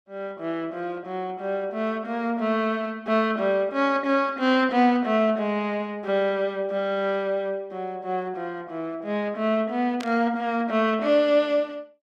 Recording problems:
static burst; at 10 s; peak -8 dB vs average level

